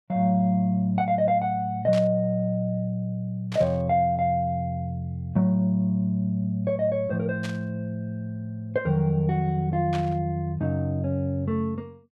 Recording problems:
static burst; 4 times, first at 2 s; peak -7 dB vs average level

